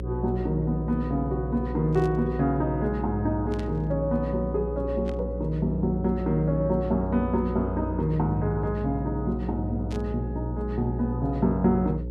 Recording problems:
hum; 60 Hz, harmonics up to 540 Hz, SNR 6 dB
burst of static; 4 times, first at 2 s; peak -13 dB vs average level

